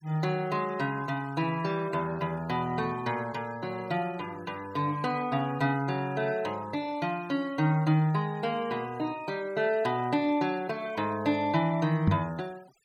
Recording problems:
denoising artefacts; signal-to-artefact ratio 23 dB
microphone bump; at 12 s; peak +8 dB vs average level

